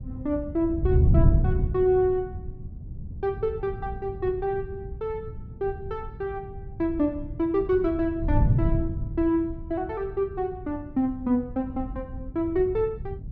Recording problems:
wind noise; below 130 Hz, SNR 3 dB

